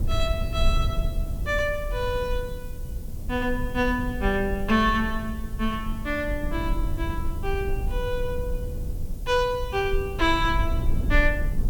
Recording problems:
hiss; slope +4 dB per octave, SNR 22 dB
low-frequency rumble; below 70 Hz, SNR 4 dB

